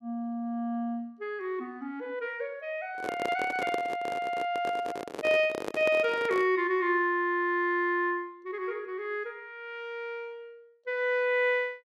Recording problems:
handling noise; from 3 to 6.5 s; peak 0 dB vs average level

